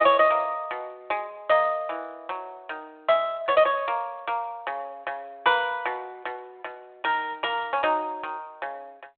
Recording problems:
phone line; 300 Hz to 3.7 kHz, G.726

